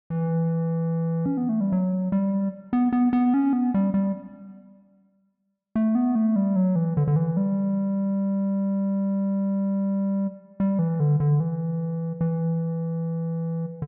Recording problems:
none

